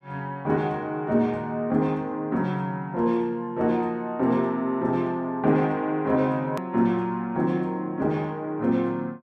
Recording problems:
click at an edit; at 6.5 s

